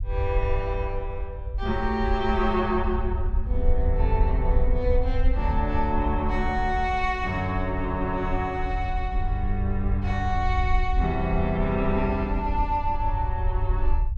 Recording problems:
rumble; below 64 Hz, SNR 2 dB

